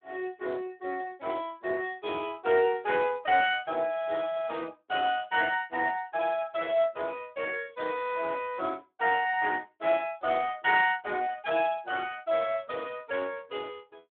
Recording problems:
telephone audio; 280 Hz to 3.6 kHz, Speex

